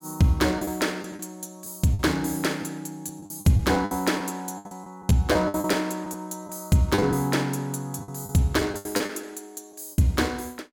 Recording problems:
packet loss; 10% of the sound replaced, filled with the last packet

